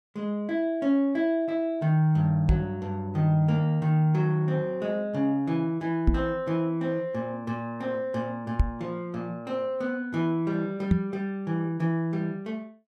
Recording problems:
knock on the microphone; 4 times, first at 2.5 s; peak +8 dB vs average level

